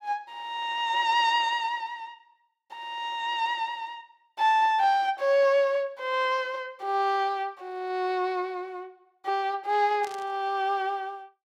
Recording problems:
burst of static; at 10 s; peak -13 dB vs average level

